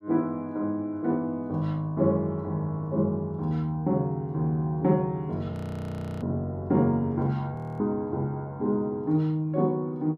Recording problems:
audio freezing; at 5.5 s for 0.5 s and at 7.5 s

